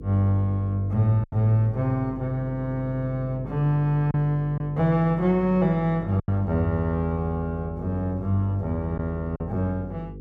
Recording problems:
hum; 50 Hz, harmonics up to 500 Hz, SNR 14 dB
lost packets; 3% of the sound replaced, filled with silence

